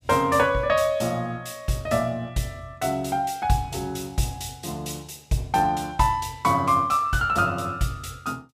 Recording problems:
none

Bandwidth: 15.5 kHz